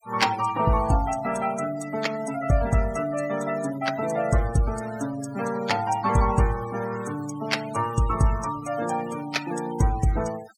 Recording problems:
denoising artefacts; signal-to-artefact ratio 15 dB

